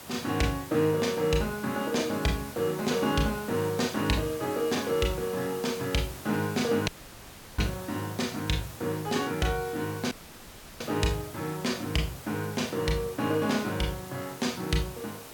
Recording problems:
background hiss; slope -3 dB per octave, SNR 13 dB
audio cutting out; at 7 s for 0.5 s and at 10 s for 0.5 s

